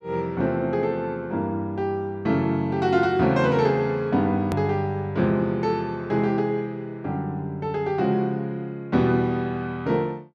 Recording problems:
edit click; at 4.5 s

